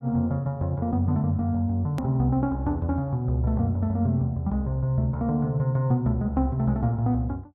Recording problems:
edit click; at 2 s

